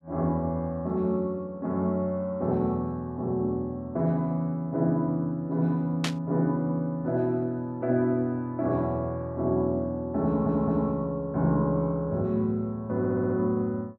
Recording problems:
burst of static; at 6 s; peak +2 dB vs average level
stutter; at 10 s and at 13 s

